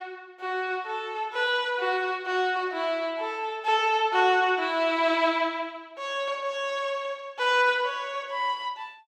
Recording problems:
none

